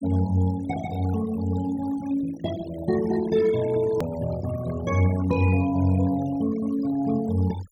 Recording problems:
denoising artefacts; signal-to-artefact ratio 17 dB
click at an edit; at 4 s

